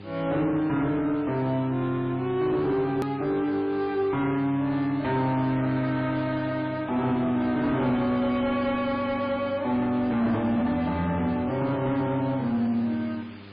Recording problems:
codec artefacts; MP3, log-spectral distance 2 dB, nothing above 14.1 kHz
distorted audio; soft clipping, signal-to-distortion ratio 12 dB
electrical hum; 50 Hz, harmonics up to 1.3 kHz, SNR 19 dB
background hiss; SNR 22 dB
hard cut with a click; at 3 s

